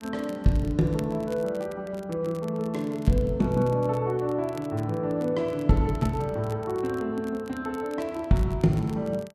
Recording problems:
crackle; vinyl, SNR 25 dB

